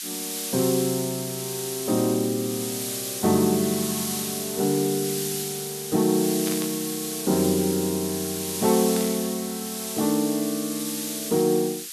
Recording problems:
hiss; slope +7 dB per octave, SNR 4 dB
static burst; at 6.5 s and at 9 s; peak -6 dB vs average level

